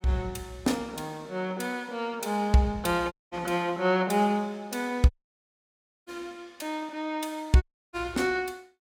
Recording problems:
audio cutting out; at 3 s, at 5 s for 1 s and at 7.5 s

